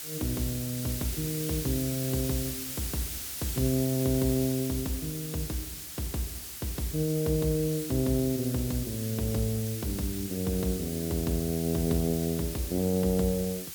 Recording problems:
hiss; slope +2 dB per octave, SNR 6 dB

